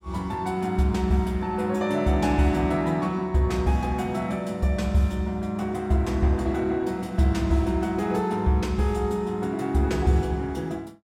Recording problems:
none

